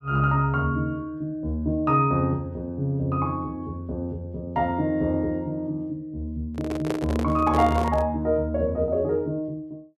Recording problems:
handling noise; from 6.5 to 8 s; peak 0 dB vs average level

